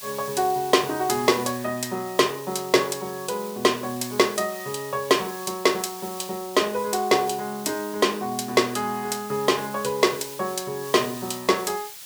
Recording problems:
background hiss; slope +3 dB per octave, SNR 14 dB

